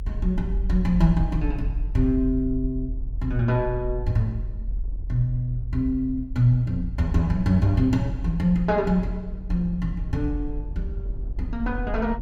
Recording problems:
low-frequency rumble; below 48 Hz, strongest tone 42 Hz, SNR 8 dB
wind noise; below 140 Hz, SNR 20 dB

